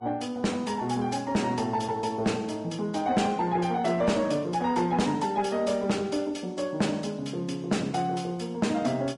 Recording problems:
lossy codec; Vorbis, log-spectral distance 3 dB, nothing above 10.4 kHz
distorted audio; soft clipping, signal-to-distortion ratio 12 dB

